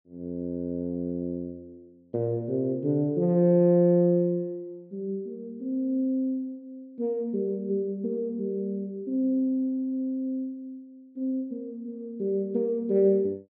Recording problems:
none

